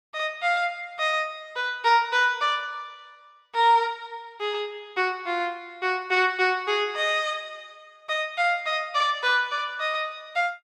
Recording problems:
none

